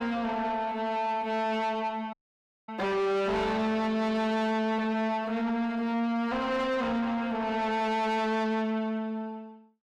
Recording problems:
distortion; soft clipping, signal-to-distortion ratio 7 dB
dropout; at 2 s for 0.5 s

